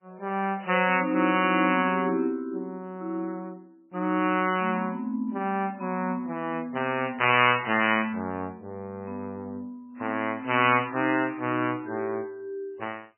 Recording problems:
lossy compression; MP3, log-spectral distance 2 dB, nothing above 3 kHz

